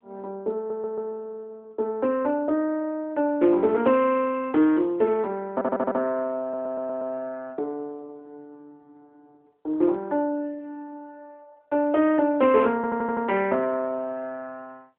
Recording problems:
telephone audio; 240 Hz to 3.2 kHz, AMR-NB
audio stuttering; 4 times, first at 0.5 s

